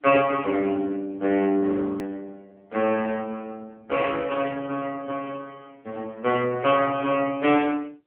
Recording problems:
phone line; 260 Hz to 3.4 kHz, AMR-NB
edit click; at 2 s

